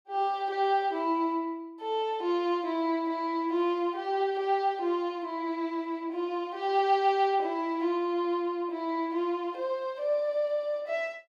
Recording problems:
none

